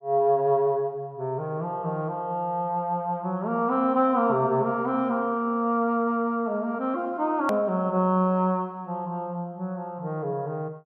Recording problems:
click at an edit; at 7.5 s

